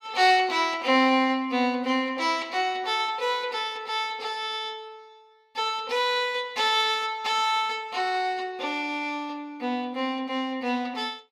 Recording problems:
none

